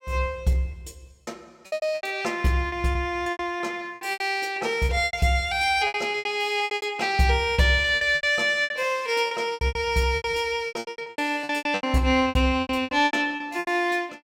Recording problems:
packet loss; 20% of the sound replaced, filled with repeated pitch periods

